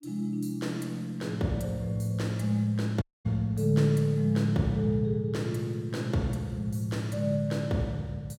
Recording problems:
audio cutting out; at 3 s

